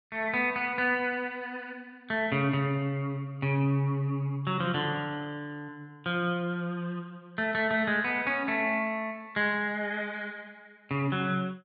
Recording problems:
low-pass filter; nothing above 5.5 kHz

